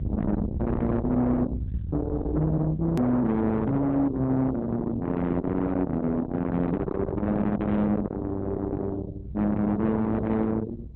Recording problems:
lossy codec; Opus, log-spectral distance 2 dB, nothing above 13.1 kHz
distorted audio; soft clipping, signal-to-distortion ratio 6 dB
rumble; below 370 Hz, SNR 6 dB
edit click; at 3 s

